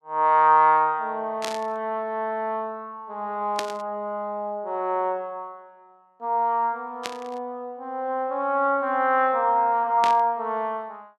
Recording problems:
burst of static; 4 times, first at 1.5 s; peak -1 dB vs average level

